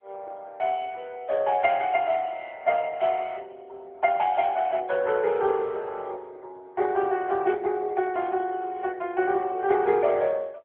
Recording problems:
telephone audio; 320 Hz to 3.4 kHz, AMR-NB

